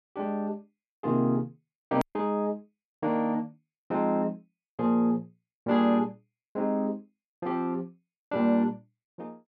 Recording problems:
hard cut with a click; at 2 s

